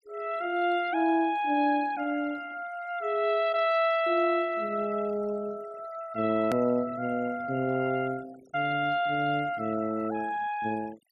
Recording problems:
noise reduction artefacts; signal-to-artefact ratio 20 dB
edit click; at 6.5 s

